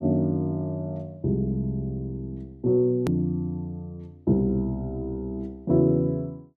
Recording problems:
click at an edit; at 3 s

